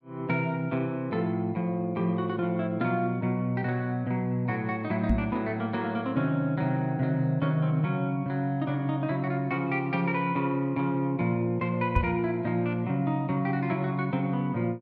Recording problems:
microphone bump; at 5 s and at 12 s; peak +6 dB vs average level

